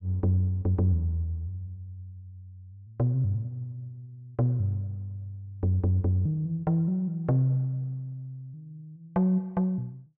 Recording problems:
none

